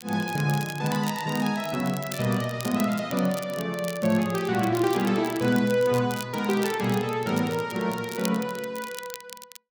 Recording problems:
crackle; vinyl, SNR 14 dB

